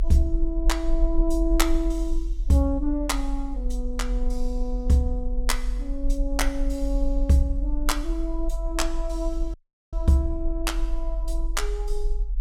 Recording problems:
low-frequency rumble; below 44 Hz, SNR 3 dB
dropout; at 9.5 s

